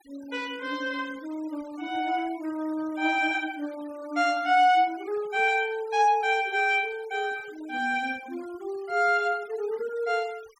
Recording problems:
noise reduction artefacts; signal-to-artefact ratio 23 dB

